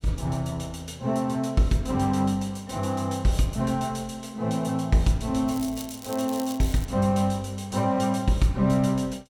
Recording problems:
crackling; from 5.5 to 7 s; loose cable, SNR 16 dB

